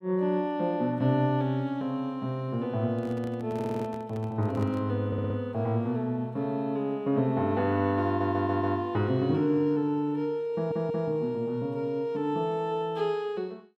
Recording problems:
handling noise; from 3 to 5 s; peak -9 dB vs average level
stutter; 4 times, first at 3.5 s

